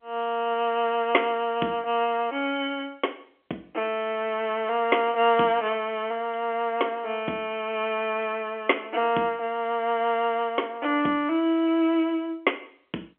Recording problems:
phone line; 190 Hz to 3.3 kHz, G.711

